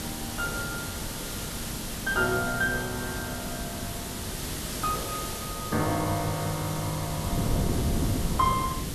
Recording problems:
hum; 50 Hz, harmonics up to 500 Hz, SNR 16 dB
background hiss; slope -1 dB per octave, SNR 5 dB
wind noise; below 260 Hz, SNR 5 dB

